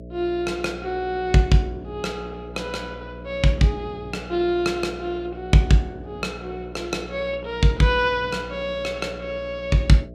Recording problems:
hum; 60 Hz, harmonics up to 660 Hz, SNR 15 dB

